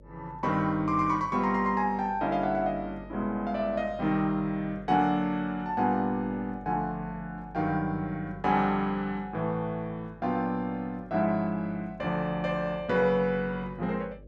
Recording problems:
hum; 50 Hz, harmonics up to 600 Hz, SNR 21 dB

